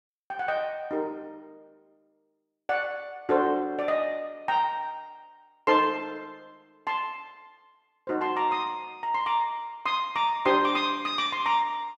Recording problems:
none

